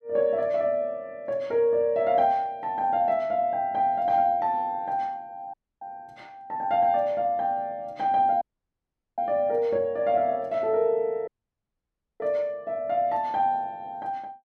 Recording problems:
dropout; at 5.5 s, at 8.5 s for 1 s and at 11 s for 1 s

